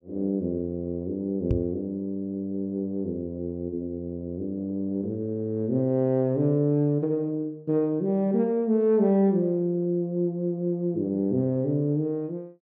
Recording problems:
microphone thump; at 1.5 s; peak +4 dB vs average level

